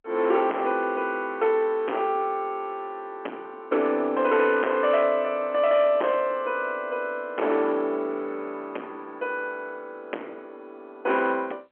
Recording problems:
phone line; 260 Hz to 3.6 kHz, G.711
distorted audio; hard clipping, signal-to-distortion ratio 7 dB

